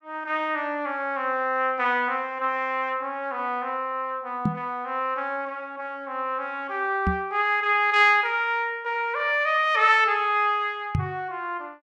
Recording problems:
microphone thump; at 4.5 s, at 7 s and at 11 s; peak +3 dB vs average level

